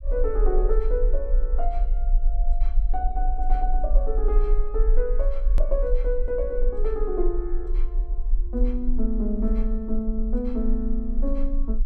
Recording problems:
low-frequency rumble; below 38 Hz, strongest tone 22 Hz, SNR -3 dB
click at an edit; at 5.5 s

